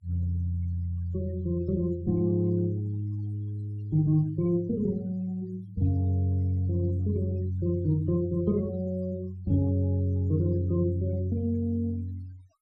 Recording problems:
noise reduction artefacts; signal-to-artefact ratio 28 dB

